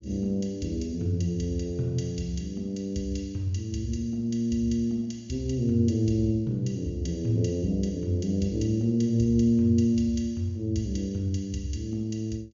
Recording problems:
treble missing; nothing above 7.1 kHz

